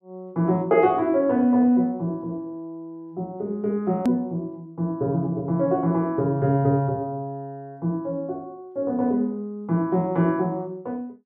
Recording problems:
click at an edit; at 4 s

